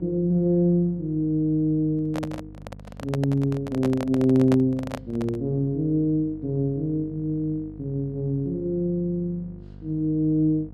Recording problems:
hum; 50 Hz, harmonics up to 750 Hz, SNR 19 dB
handling noise; from 2 to 5.5 s; peak -2 dB vs average level

